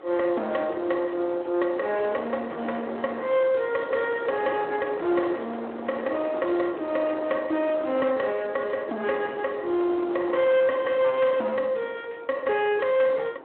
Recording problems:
phone line; 280 Hz to 3.4 kHz, Speex
distortion; soft clipping, signal-to-distortion ratio 11 dB
wind noise; below 910 Hz, SNR 12 dB

